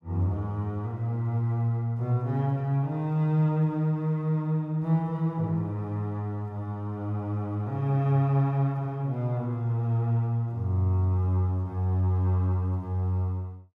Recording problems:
none

